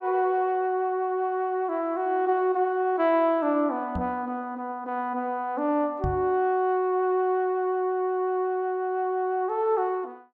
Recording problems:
microphone thump; at 4 s and at 6 s; peak -1 dB vs average level

